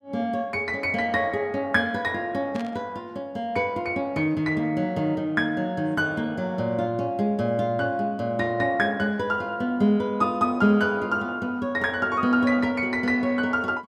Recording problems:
static burst; at 2.5 s; peak -12 dB vs average level

